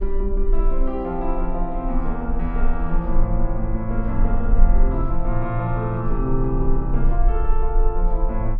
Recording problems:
low-frequency rumble; below 36 Hz, strongest tone 20 Hz, SNR 0 dB

